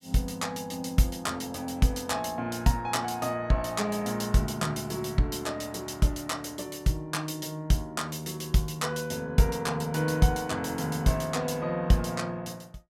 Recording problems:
none

